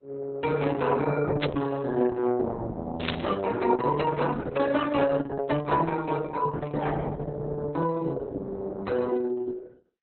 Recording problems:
lossy codec; Vorbis, then Opus, log-spectral distance 4 dB, nothing above 4.1 kHz
static burst; at 1.5 s and at 3 s; peak +2 dB vs average level

